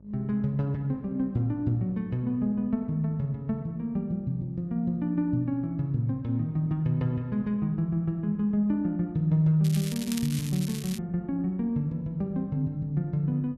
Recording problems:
electrical hum; 50 Hz, harmonics up to 650 Hz, SNR 27 dB
crackling; from 9.5 to 11 s; loose cable, SNR 11 dB

